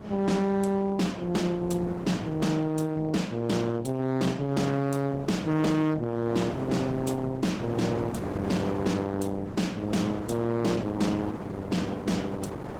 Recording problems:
lossy compression; Opus, log-spectral distance 3 dB, nothing above 19 kHz
distortion; hard clipping, signal-to-distortion ratio 11 dB
wind noise; below 620 Hz, SNR 9 dB

